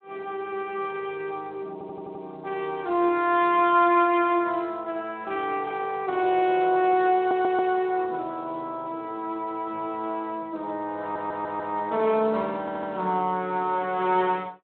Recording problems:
phone line; 150 Hz to 3.8 kHz, Speex
stutter; 4 times, first at 1.5 s

